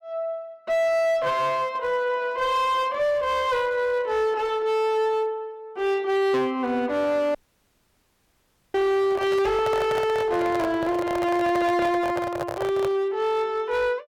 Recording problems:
distorted audio; hard clipping, uneven, signal-to-distortion ratio 9 dB
audio cutting out; at 7.5 s for 1.5 s
handling noise; from 9 to 13 s; peak -2 dB vs average level

